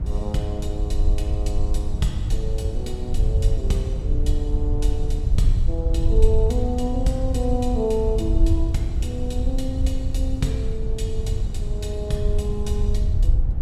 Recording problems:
hum; 60 Hz, harmonics up to 1.2 kHz, SNR 16 dB
rumble; below 70 Hz, SNR -3 dB
wind noise; below 100 Hz, SNR 4 dB

